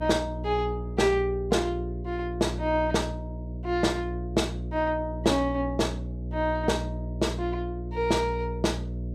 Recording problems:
hum; 60 Hz, harmonics up to 540 Hz, SNR 6 dB

